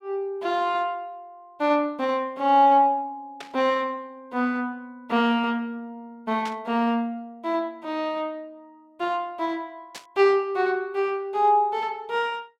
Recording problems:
static burst; at 3.5 s, at 6.5 s and at 10 s; peak -8 dB vs average level

